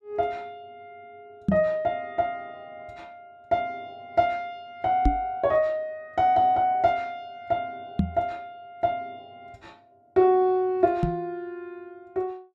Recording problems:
microphone thump; 4 times, first at 1.5 s; peak +6 dB vs average level

